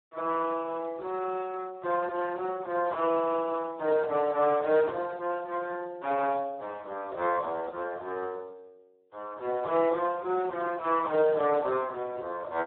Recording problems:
phone line; 340 Hz to 2 kHz, Speex

